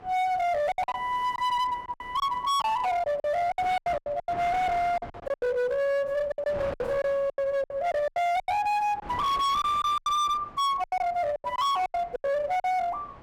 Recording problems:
distortion; hard clipping, uneven, signal-to-distortion ratio 8 dB
wind on the microphone; below 1.2 kHz, SNR 18 dB
packet loss; 14% of the sound replaced, filled with silence

